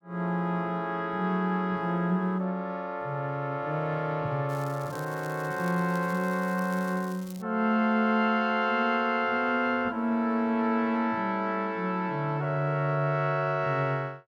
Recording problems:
crackle; from 4.5 to 7.5 s; loose cable, SNR 22 dB

